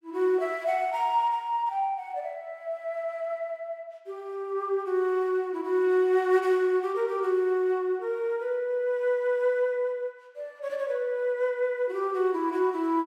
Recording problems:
none

